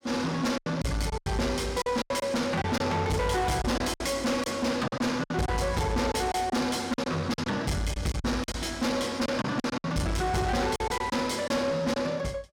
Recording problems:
distortion; soft clipping, signal-to-distortion ratio 7 dB
lost packets; 10% of the sound replaced, filled with silence

